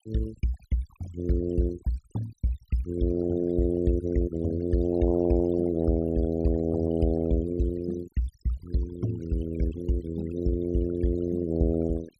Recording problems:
noise reduction artefacts; signal-to-artefact ratio 18 dB

